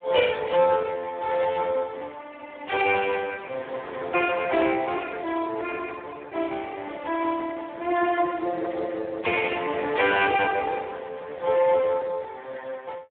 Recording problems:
telephone audio; 280 Hz to 3.4 kHz, Speex

